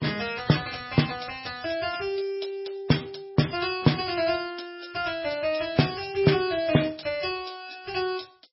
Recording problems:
lossy codec; MP3, log-spectral distance 7 dB, nothing above 5.3 kHz

